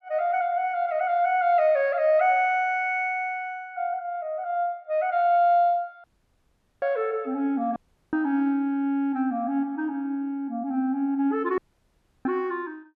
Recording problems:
dropout; at 6 s for 1 s, at 8 s and at 12 s for 0.5 s

